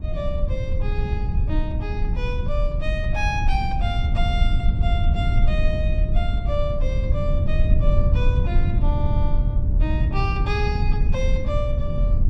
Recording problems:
low-frequency rumble; below 84 Hz, SNR -7 dB

